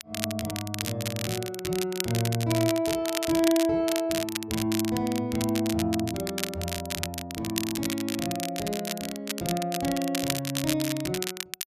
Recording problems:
crackle; vinyl, SNR 5 dB

